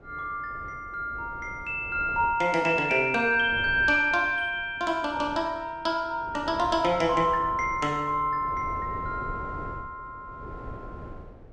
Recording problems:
wind on the microphone; below 450 Hz, SNR 17 dB

